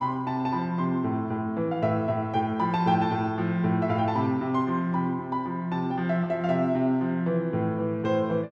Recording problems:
none

